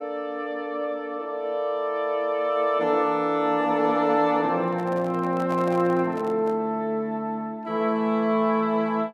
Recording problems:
microphone handling noise; from 4.5 to 6.5 s; peak -9 dB vs average level

